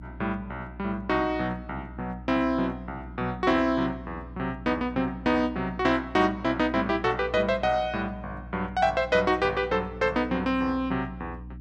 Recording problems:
hum; 60 Hz, harmonics up to 300 Hz, SNR 16 dB

